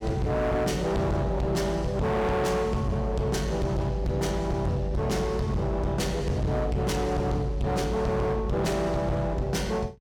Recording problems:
distortion; hard clipping, signal-to-distortion ratio 7 dB

